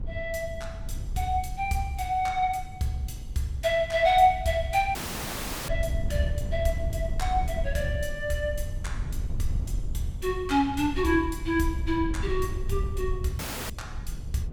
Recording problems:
wind noise; below 86 Hz, SNR 7 dB
audio cutting out; at 5 s for 0.5 s and at 13 s

